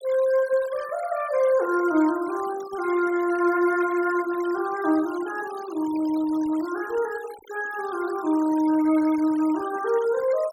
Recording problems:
noise reduction artefacts; signal-to-artefact ratio 19 dB

